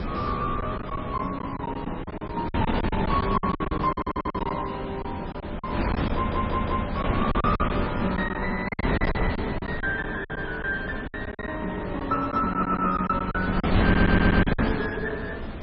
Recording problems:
codec artefacts; MP3, then MP2, log-spectral distance 4 dB, nothing above 5.5 kHz
wind on the microphone; below 500 Hz, SNR 0 dB
packet loss; 11% of the sound replaced, filled with silence
stutter; 4 times, first at 4 s

